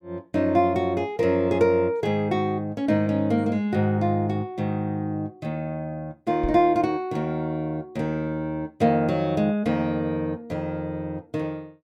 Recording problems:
knock on the microphone; at 6.5 s; peak -3 dB vs average level

